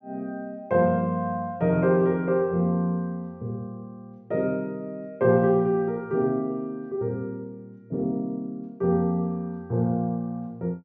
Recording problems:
treble missing; nothing above 8 kHz

